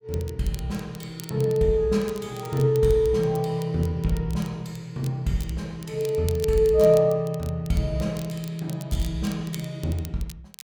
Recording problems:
crackle; vinyl, SNR 20 dB

